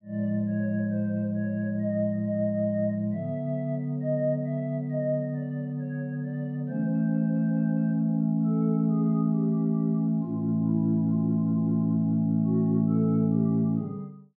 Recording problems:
none

